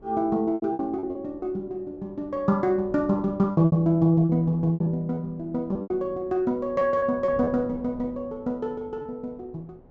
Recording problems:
low-pass filter; nothing above 8 kHz
wind noise; below 410 Hz, SNR 21 dB
lost packets; 9% of the sound replaced, filled with repeated pitch periods

